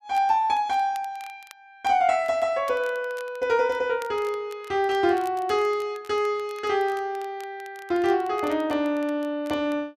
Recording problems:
crackling; vinyl, SNR 25 dB

